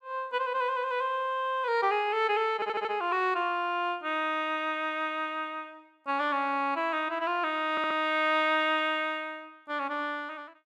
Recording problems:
audio stuttering; at 2.5 s and at 7.5 s

